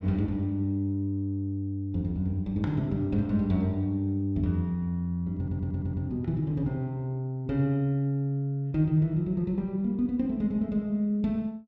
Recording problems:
stutter; at 5.5 s

